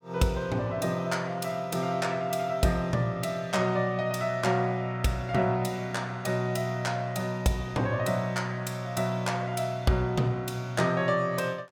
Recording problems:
none

